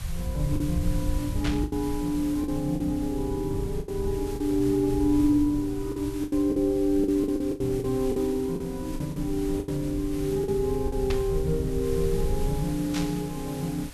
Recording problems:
background hiss; SNR 17 dB
low-frequency rumble; below 88 Hz, SNR 9 dB
lost packets; 8% of the sound replaced, filled with the last packet
static burst; at 1.5 s, at 11 s and at 13 s; peak -2 dB vs average level

